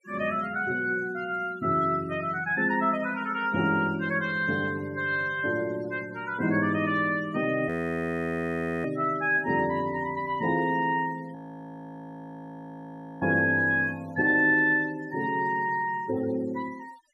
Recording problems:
noise reduction artefacts; signal-to-artefact ratio 22 dB
frozen audio; at 7.5 s for 1 s and at 11 s for 2 s

